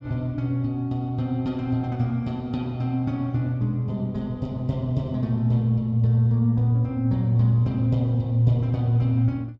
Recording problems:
none

